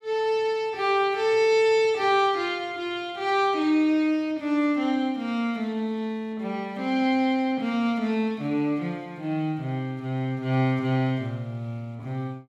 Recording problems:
none

